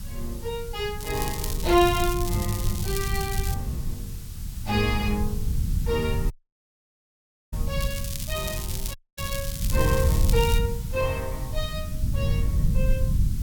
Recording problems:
background hiss; slope +1 dB per octave, SNR 15 dB
rumble; below 100 Hz, SNR 1 dB
crackling; from 1 to 3.5 s and from 8 to 11 s; loose cable, SNR 6 dB
audio cutting out; at 6.5 s for 1 s and at 9 s

